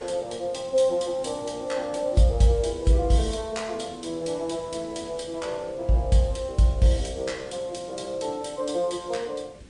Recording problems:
codec artefacts; MP3, log-spectral distance 3 dB, nothing above 10.1 kHz
background hiss; SNR 22 dB

